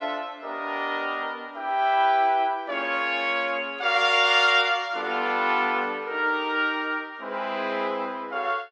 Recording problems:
none

